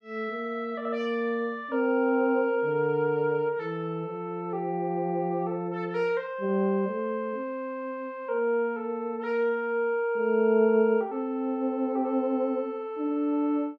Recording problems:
none

